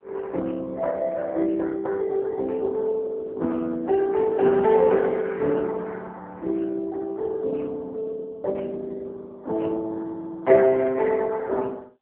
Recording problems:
phone line; 170 Hz to 3.1 kHz, AMR-NB

